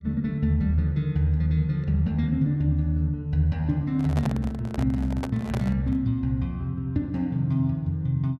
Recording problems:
handling noise; from 4 to 6 s; peak -4 dB vs average level

